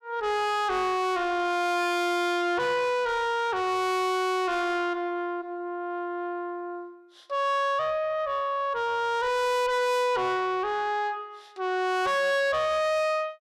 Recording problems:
distortion; soft clipping, signal-to-distortion ratio 6 dB

